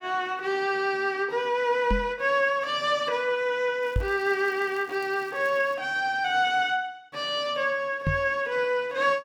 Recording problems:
microphone bump; at 2 s, at 4 s and at 8 s; peak +3 dB vs average level
crackle; from 4 to 6 s; loose cable, SNR 28 dB

